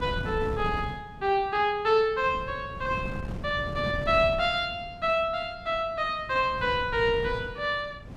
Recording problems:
wind noise; below 230 Hz, SNR 11 dB

